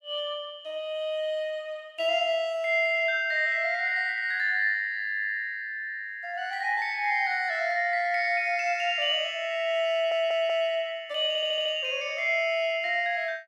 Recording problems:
audio stuttering; at 10 s and at 11 s

